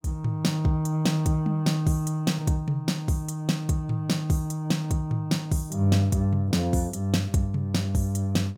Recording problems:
none

